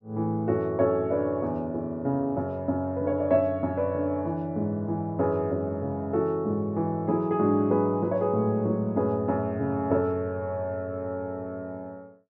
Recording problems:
none

